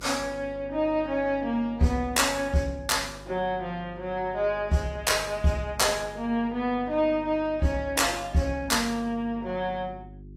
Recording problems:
lossy compression; AAC, log-spectral distance 2 dB
hum; 50 Hz, harmonics up to 400 Hz, SNR 20 dB

